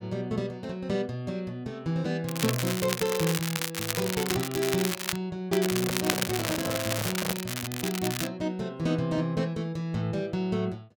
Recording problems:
crackling; from 2.5 to 5 s and from 5.5 to 8.5 s; loose cable, SNR 2 dB
handling noise; from 5.5 to 7.5 s; peak 0 dB vs average level

